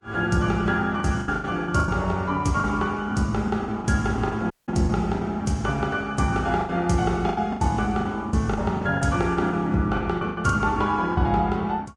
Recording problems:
lossy compression; Vorbis, log-spectral distance 2 dB, nothing above 10.1 kHz
lost packets; 12% of the sound replaced, filled with the last packet
audio cutting out; at 4.5 s

